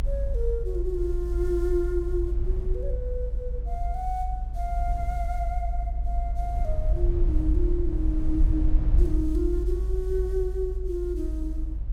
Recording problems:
low-frequency rumble; below 52 Hz, SNR -3 dB

